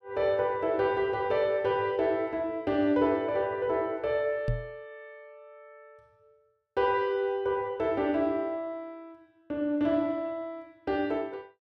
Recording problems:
knock on the microphone; at 4.5 s; peak +2 dB vs average level

